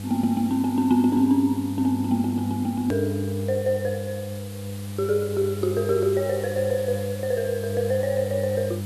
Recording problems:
hum; 50 Hz, harmonics up to 700 Hz, SNR 9 dB
background hiss; slope -1 dB per octave, SNR 18 dB
click at an edit; at 3 s

